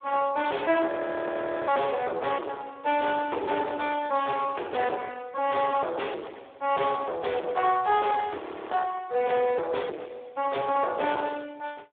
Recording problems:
telephone audio; 320 Hz to 3.5 kHz, Speex
distorted audio; soft clipping, signal-to-distortion ratio 9 dB
audio freezing; at 1 s for 1 s and at 8.5 s

